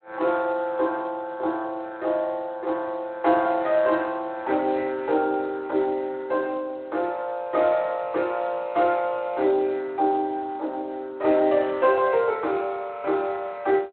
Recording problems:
telephone audio; 280 Hz to 3.2 kHz, Speex

